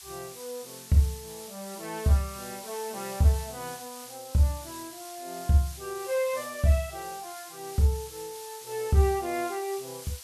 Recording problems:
background hiss; slope +3 dB per octave, SNR 14 dB

